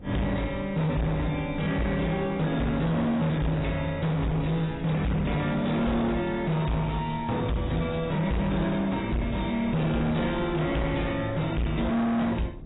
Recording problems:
codec artefacts; AAC, log-spectral distance 4 dB, nothing above 3.8 kHz
distorted audio; hard clipping, signal-to-distortion ratio 7 dB
wind noise; below 280 Hz, SNR 16 dB

